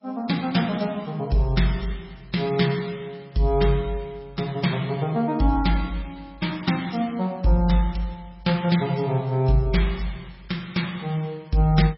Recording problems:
codec artefacts; MP3, log-spectral distance 4 dB, nothing above 5.5 kHz

